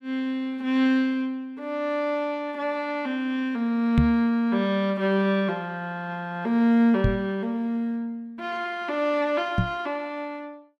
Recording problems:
microphone thump; at 4 s, at 7 s and at 9.5 s; peak +8 dB vs average level

